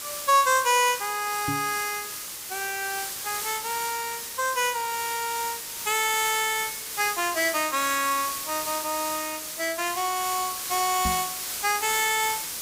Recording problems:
background hiss; slope +1 dB per octave, SNR 5 dB
microphone thump; at 1.5 s and at 11 s; peak -1 dB vs average level

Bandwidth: 15.5 kHz